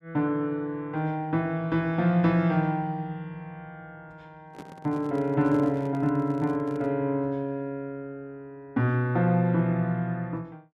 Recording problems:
handling noise; from 4.5 to 7 s; peak -10 dB vs average level

